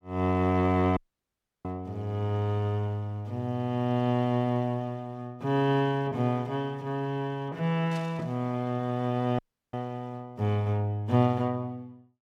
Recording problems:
dropout; at 1 s for 0.5 s and at 9.5 s
static burst; at 8 s; peak -12 dB vs average level

